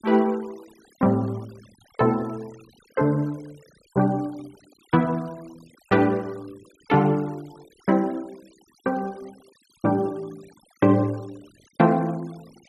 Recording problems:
noise reduction artefacts; signal-to-artefact ratio 27 dB

